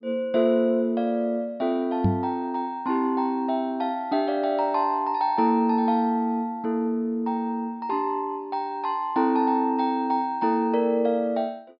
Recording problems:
treble missing; nothing above 5.5 kHz
microphone thump; at 2 s; peak +5 dB vs average level

